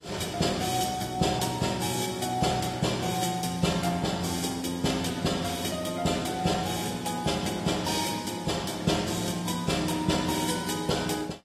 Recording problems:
lossy codec; AAC, log-spectral distance 5 dB, nothing above 13.1 kHz

